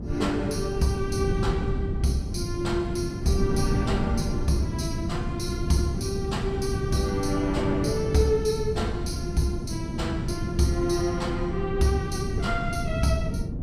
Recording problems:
wind noise; below 200 Hz, SNR 2 dB

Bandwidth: 14.5 kHz